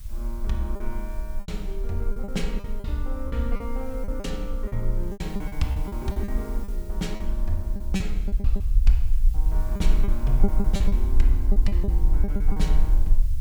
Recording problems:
background hiss; slope +2 dB per octave, SNR 19 dB
low-frequency rumble; below 44 Hz, strongest tone 22 Hz, SNR -5 dB
packet loss; 12% of the sound replaced, filled with repeated pitch periods

